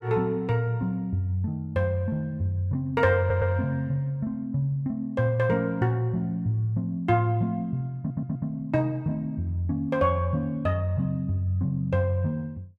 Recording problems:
stutter; at 3 s and at 8 s

